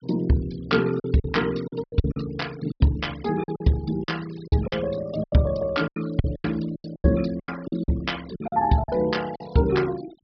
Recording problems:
low-pass filter; nothing above 5.5 kHz
noise reduction artefacts; signal-to-artefact ratio 19 dB
lost packets; 13% of the sound replaced, filled with silence

